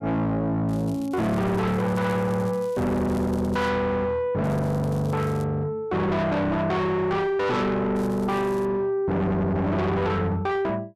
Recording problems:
distorted audio; soft clipping, signal-to-distortion ratio 6 dB
crackle; from 0.5 to 3.5 s, from 4.5 to 5.5 s and at 8 s; loose cable, SNR 25 dB

